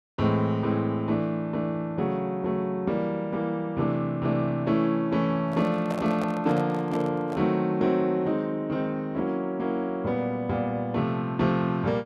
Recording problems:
handling noise; from 5.5 to 7.5 s; peak -4 dB vs average level

